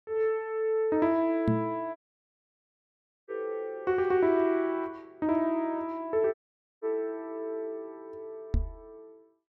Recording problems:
microphone thump; at 1.5 s and at 8.5 s; peak +5 dB vs average level
dropout; at 2 s for 1.5 s and at 6.5 s

